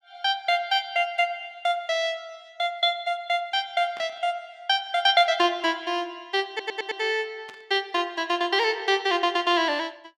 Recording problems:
static burst; at 4 s and at 7.5 s; peak -15 dB vs average level
stutter; at 6.5 s

